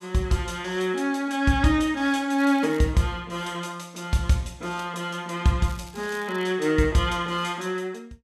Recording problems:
crackling; at 2.5 s and at 5.5 s; loose cable, SNR 24 dB

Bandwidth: 13.5 kHz